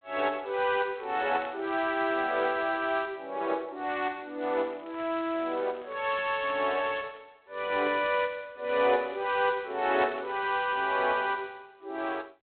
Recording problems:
phone line; 300 Hz to 3.5 kHz, G.726
crackling; from 1 to 2.5 s, from 4.5 to 7 s and from 8.5 to 11 s; loose cable, SNR 27 dB

